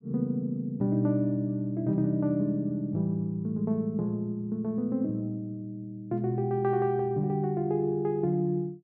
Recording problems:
none

